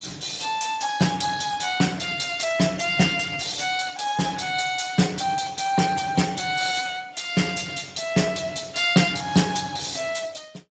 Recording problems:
lossy compression; Speex, log-spectral distance 8 dB, nothing above 7.6 kHz

